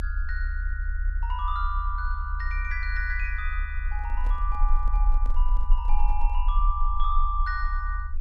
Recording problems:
low-frequency rumble; below 40 Hz, SNR -4 dB
microphone handling noise; from 4 to 6.5 s; peak -10 dB vs average level

